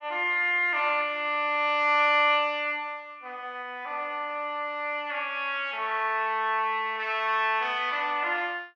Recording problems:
none

